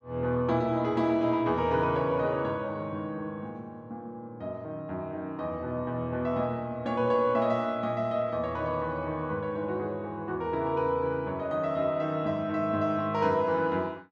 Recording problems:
none

